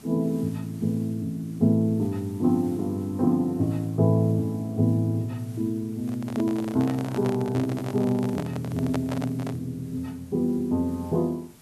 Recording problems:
background hiss; SNR 24 dB
handling noise; from 6 to 9.5 s; peak -2 dB vs average level

